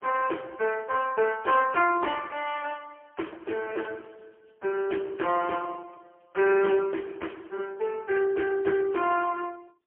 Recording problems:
phone line; 300 Hz to 3.1 kHz, AMR-NB, then MP3

